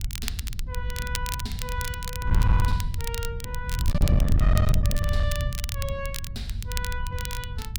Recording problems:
distortion; hard clipping, signal-to-distortion ratio 11 dB
wind on the microphone; below 100 Hz, SNR -7 dB
crackling; vinyl, SNR 2 dB

